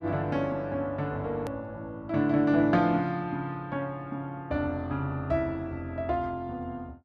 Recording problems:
click at an edit; at 1.5 s

